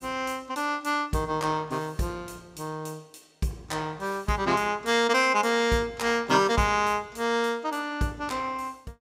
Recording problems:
none

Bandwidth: 15.5 kHz